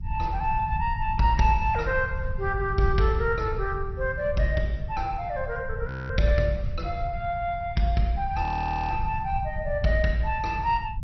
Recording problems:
codec artefacts; Opus, then MP2, log-spectral distance 2 dB, nothing above 5.8 kHz
low-frequency rumble; below 98 Hz, SNR 7 dB
frozen audio; at 6 s and at 8.5 s

